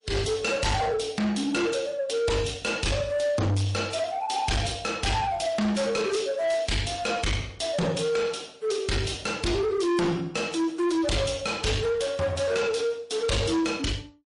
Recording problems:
lossy compression; MP3, log-spectral distance 3 dB, nothing above 10.4 kHz
distorted audio; soft clipping, signal-to-distortion ratio 6 dB

